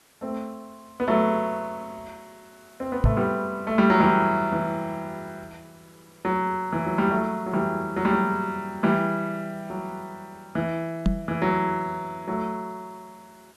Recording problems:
background hiss; slope -2 dB per octave, SNR 29 dB
microphone bump; at 3 s and at 11 s; peak +8 dB vs average level

